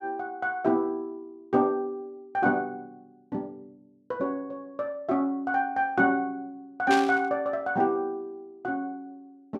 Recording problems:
static burst; at 7 s; peak +1 dB vs average level

